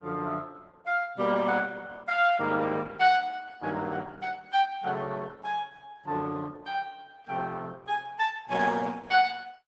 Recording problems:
lossy codec; Opus, log-spectral distance 4 dB, nothing above 7.8 kHz

